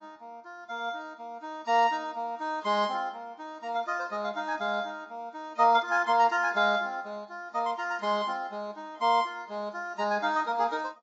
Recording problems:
codec artefacts; AAC, log-spectral distance 2 dB, nothing above 7.3 kHz

